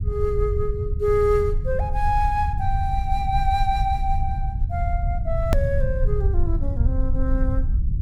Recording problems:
low-frequency rumble; below 80 Hz, SNR 0 dB
hard cut with a click; at 5.5 s

